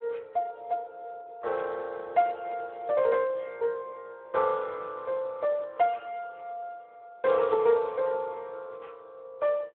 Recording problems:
telephone audio; 370 Hz to 3.5 kHz, Speex

